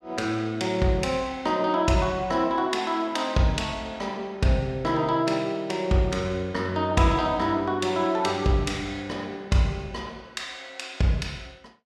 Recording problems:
none

